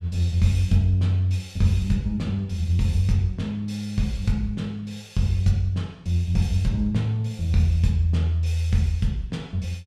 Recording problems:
none

